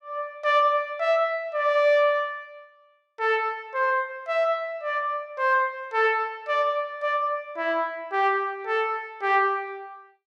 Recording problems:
none

